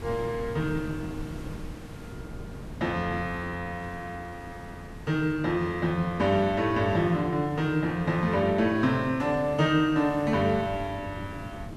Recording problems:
hiss; slope -4 dB per octave, SNR 21 dB
wind noise; below 270 Hz, SNR 16 dB

